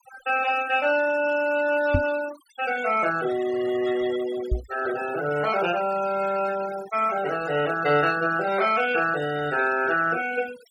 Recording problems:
noise reduction artefacts; signal-to-artefact ratio 15 dB
microphone thump; at 2 s and at 4.5 s; peak +4 dB vs average level

